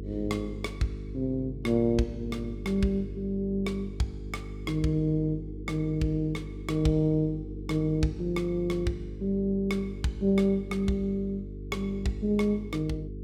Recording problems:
mains hum; 50 Hz, harmonics up to 450 Hz, SNR 10 dB

